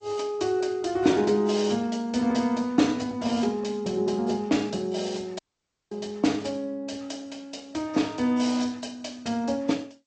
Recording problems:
codec artefacts; AAC, then G.722, log-spectral distance 3 dB, nothing above 8 kHz
dropout; at 5.5 s for 0.5 s

